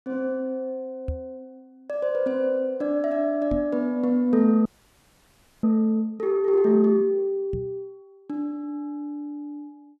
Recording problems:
microphone thump; at 1 s, at 3.5 s and at 7.5 s; peak -2 dB vs average level
frozen audio; at 4.5 s for 1 s

